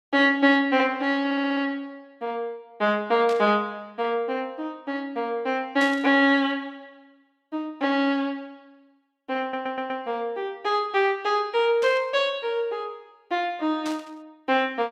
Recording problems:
audio stuttering; at 1.5 s and at 9.5 s
burst of static; 4 times, first at 3.5 s; peak -8 dB vs average level

